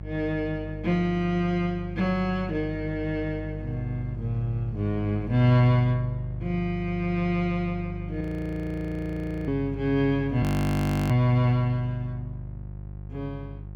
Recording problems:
hum; 50 Hz, harmonics up to 550 Hz, SNR 10 dB
frozen audio; at 8 s for 1.5 s and at 10 s for 0.5 s

